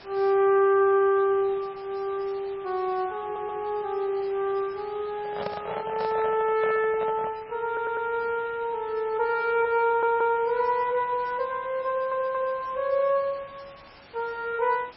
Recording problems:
lossy compression; MP3, log-spectral distance 7 dB, nothing above 4.8 kHz
background hiss; SNR 22 dB
audio stuttering; 4 times, first at 3 s
handling noise; from 5 to 7.5 s; peak -3 dB vs average level

